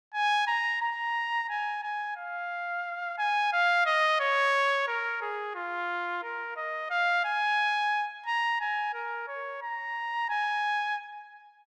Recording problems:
none

